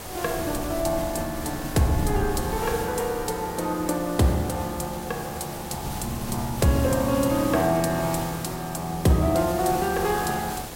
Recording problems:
hiss; slope -4 dB per octave, SNR 10 dB
wind on the microphone; below 140 Hz, SNR 13 dB

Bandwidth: 16 kHz